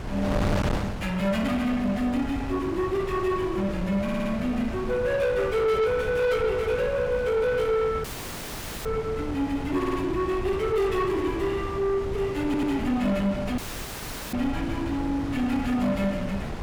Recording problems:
distorted audio; soft clipping, signal-to-distortion ratio 11 dB
wind noise; below 540 Hz, SNR 8 dB
audio stuttering; at 4 s, at 10 s and at 12 s
dropout; at 8 s for 1 s and at 14 s for 1 s

